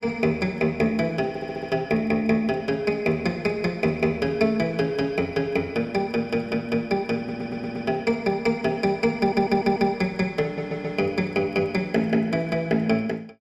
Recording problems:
stutter; 4 times, first at 1.5 s

